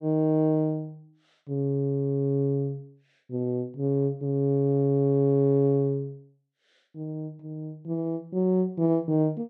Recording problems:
none

